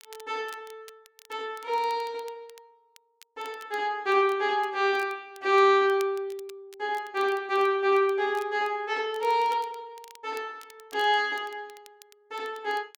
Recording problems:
crackle; vinyl, SNR 26 dB

